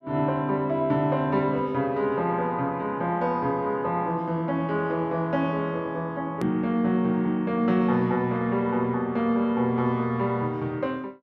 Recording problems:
hard cut with a click; at 6.5 s

